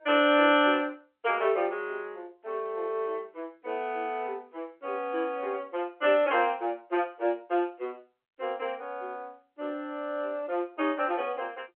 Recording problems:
phone line; 260 Hz to 3.3 kHz, G.711

